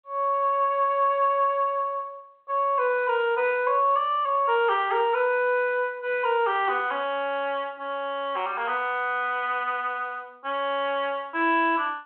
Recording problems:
telephone audio; 280 Hz to 3.3 kHz, G.726

